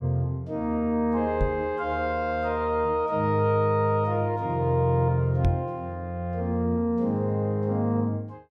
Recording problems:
knock on the microphone; at 1.5 s and at 5.5 s; peak +3 dB vs average level

